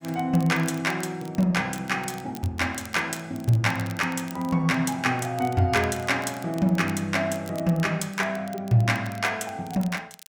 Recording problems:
crackling; vinyl, SNR 21 dB

